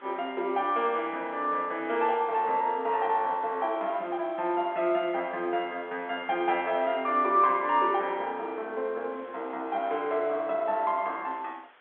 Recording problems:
phone line; 300 Hz to 3.6 kHz, G.711
hiss; SNR 26 dB

